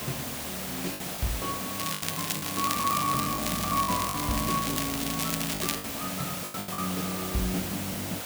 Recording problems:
hiss; SNR 1 dB
lost packets; 8% of the sound replaced, filled with the last packet
crackling; from 2 to 6 s; loose cable, SNR 1 dB

